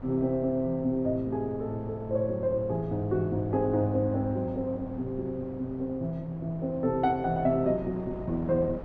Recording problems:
wind on the microphone; below 520 Hz, SNR 16 dB

